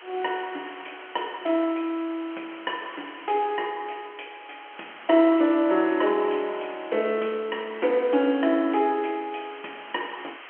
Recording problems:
phone line; 280 Hz to 3.2 kHz, G.711
background hiss; SNR 19 dB

